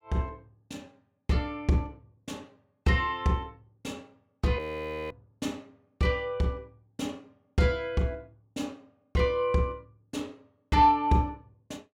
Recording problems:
frozen audio; at 4.5 s for 0.5 s

